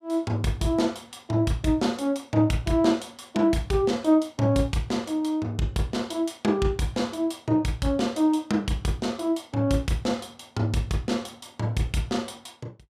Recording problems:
none

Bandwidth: 15 kHz